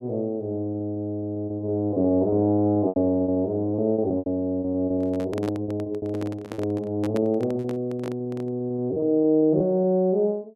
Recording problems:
lost packets; 15% of the sound replaced, filled with repeated pitch periods
microphone handling noise; from 5 to 8.5 s; peak -4 dB vs average level

